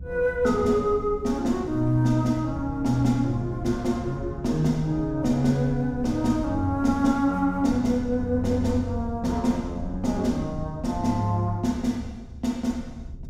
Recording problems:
rumble; below 120 Hz, SNR 13 dB

